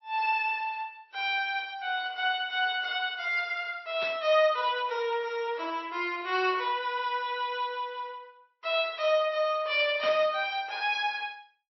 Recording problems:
codec artefacts; MP3, log-spectral distance 2 dB, nothing above 5.7 kHz
burst of static; at 4 s and at 10 s; peak -5 dB vs average level

